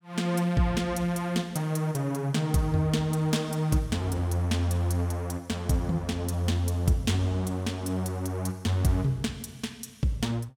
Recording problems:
none

